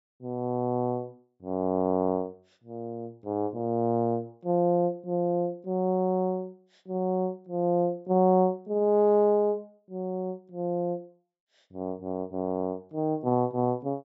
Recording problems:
treble cut off; nothing above 8 kHz

